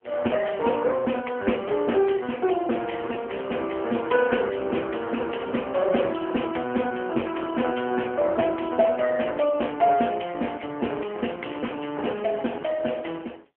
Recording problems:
telephone audio; 260 Hz to 3.1 kHz, AMR-NB

